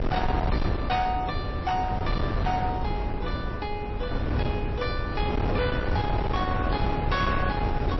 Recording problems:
lossy compression; MP3, log-spectral distance 2 dB, nothing above 5.7 kHz
distorted audio; hard clipping, signal-to-distortion ratio 12 dB
wind noise; below 400 Hz, SNR -1 dB

